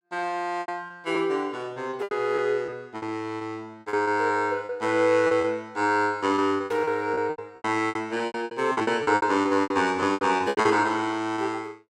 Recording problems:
packet loss; 15% of the sound replaced, filled with repeated pitch periods

